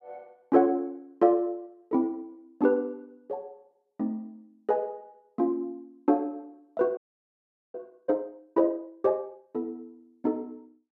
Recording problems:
audio freezing; at 7 s for 1 s

